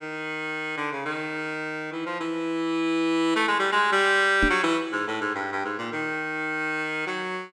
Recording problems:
knock on the microphone; at 4.5 s; peak +3 dB vs average level

